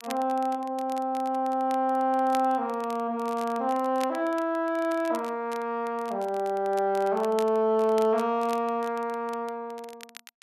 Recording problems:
crackle; vinyl, SNR 21 dB

